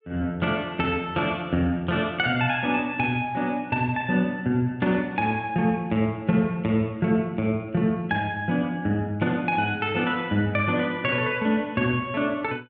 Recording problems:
none

